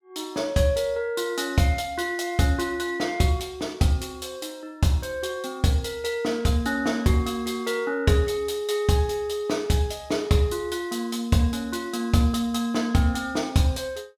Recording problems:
none

